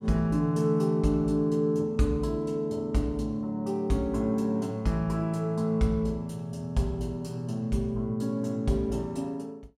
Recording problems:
none

